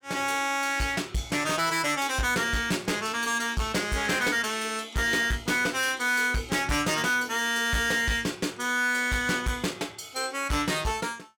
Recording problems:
distorted audio; hard clipping, signal-to-distortion ratio 11 dB

